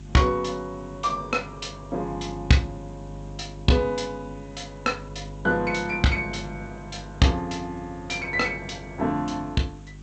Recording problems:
lossy codec; G.722, log-spectral distance 8 dB, nothing above 7.8 kHz
hum; 50 Hz, harmonics up to 400 Hz, SNR 15 dB
background hiss; SNR 29 dB

